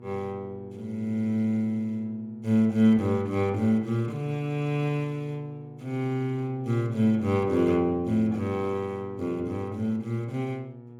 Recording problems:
electrical hum; 60 Hz, harmonics up to 960 Hz, SNR 20 dB

